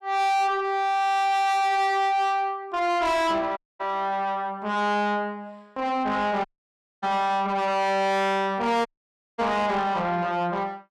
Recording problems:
distortion; soft clipping, signal-to-distortion ratio 7 dB
dropout; at 3.5 s, at 6.5 s for 0.5 s and at 9 s for 0.5 s

